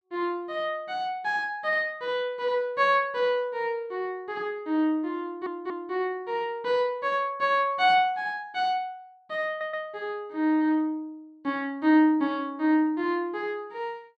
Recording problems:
stutter; at 5 s and at 9.5 s

